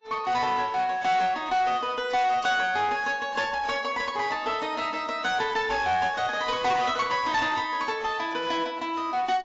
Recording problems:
lossy compression; AAC, log-spectral distance 3 dB, nothing above 7.3 kHz
distortion; hard clipping, uneven, signal-to-distortion ratio 9 dB

